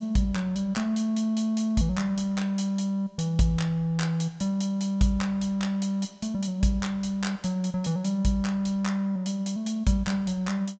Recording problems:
treble cut off; nothing above 8 kHz

